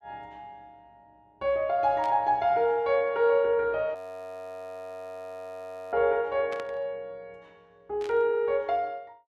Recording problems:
burst of static; at 2 s, at 6.5 s and at 8 s; peak -12 dB vs average level
audio freezing; at 4 s for 2 s

